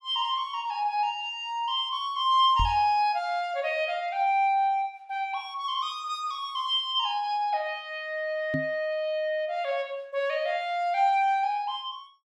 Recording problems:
microphone bump; at 2.5 s and at 8.5 s; peak +1 dB vs average level

